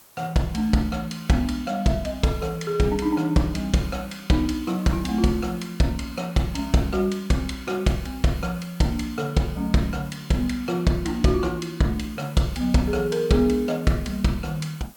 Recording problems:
hiss; slope -2 dB per octave, SNR 24 dB

